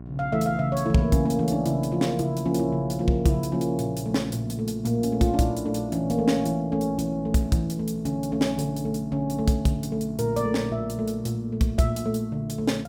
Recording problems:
hum; 60 Hz, harmonics up to 780 Hz, SNR 16 dB

